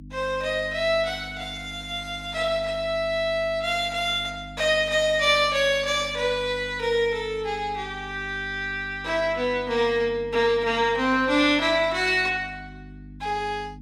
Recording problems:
hum; 50 Hz, harmonics up to 300 Hz, SNR 19 dB

